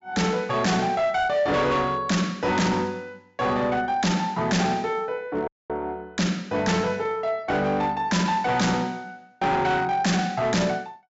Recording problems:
treble missing; nothing above 8 kHz
distorted audio; hard clipping, signal-to-distortion ratio 8 dB
audio cutting out; at 5.5 s

